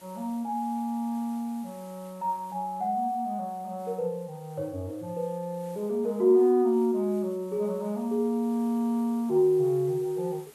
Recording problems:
hiss; slope -2 dB per octave, SNR 26 dB

